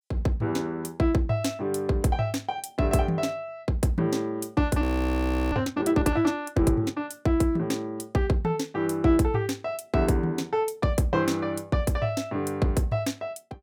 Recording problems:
frozen audio; at 5 s for 0.5 s

